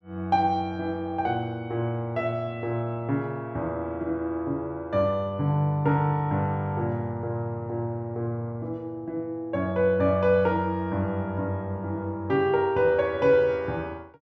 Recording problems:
none

